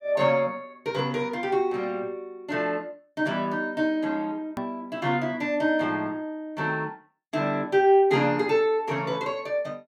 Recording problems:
edit click; at 4.5 s

